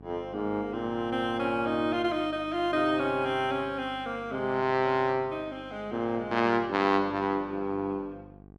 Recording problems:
mains hum; 50 Hz, harmonics up to 1.1 kHz, SNR 21 dB

